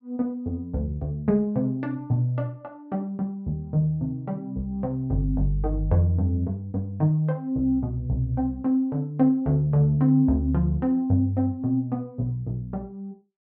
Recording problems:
none

